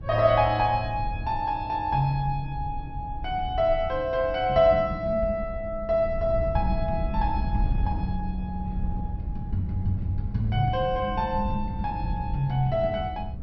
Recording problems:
treble cut off; nothing above 6 kHz
wind on the microphone; below 98 Hz, SNR 8 dB

